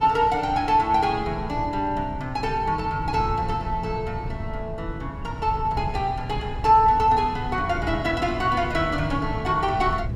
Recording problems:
wind on the microphone; below 140 Hz, SNR 10 dB

